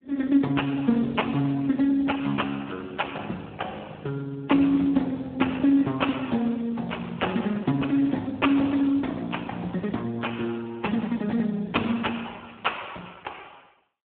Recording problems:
telephone audio; 170 Hz to 3.4 kHz, Speex

